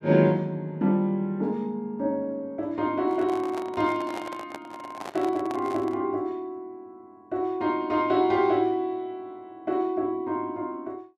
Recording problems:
handling noise; from 3 to 6 s; peak -5 dB vs average level

